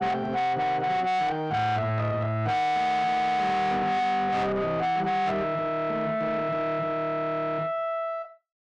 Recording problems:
distortion; soft clipping, signal-to-distortion ratio 8 dB

